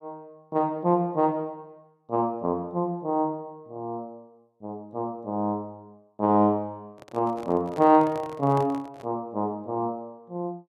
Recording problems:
handling noise; from 7 to 9 s; peak -7 dB vs average level

